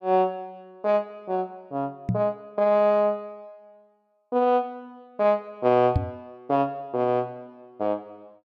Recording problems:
microphone bump; at 2 s and at 6 s; peak +5 dB vs average level

